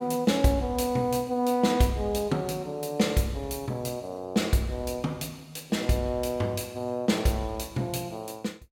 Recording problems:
none

